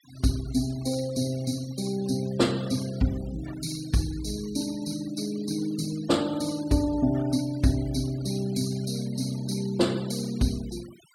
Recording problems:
denoising artefacts; signal-to-artefact ratio 19 dB

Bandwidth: 17 kHz